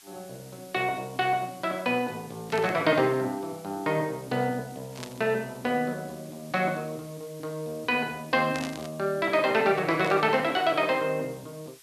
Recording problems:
hiss; slope +2 dB per octave, SNR 23 dB
burst of static; 4 times, first at 2.5 s; peak -5 dB vs average level

